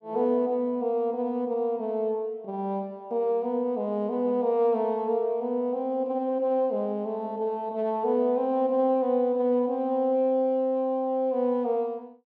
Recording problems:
none

